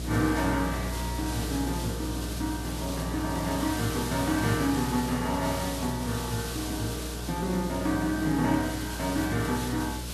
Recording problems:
mains hum; 60 Hz, harmonics up to 720 Hz, SNR 7 dB
background hiss; SNR 8 dB

